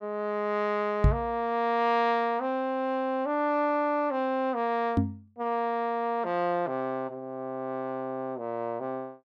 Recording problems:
knock on the microphone; at 1 s and at 5 s; peak +9 dB vs average level

